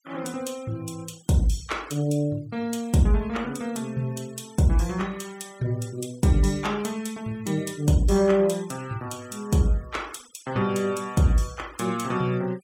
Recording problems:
denoising artefacts; signal-to-artefact ratio 22 dB

